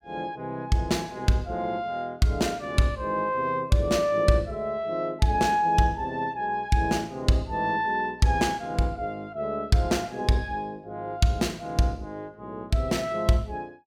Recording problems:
none

